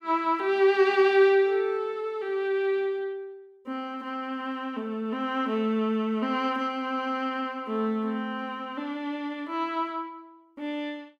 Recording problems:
none

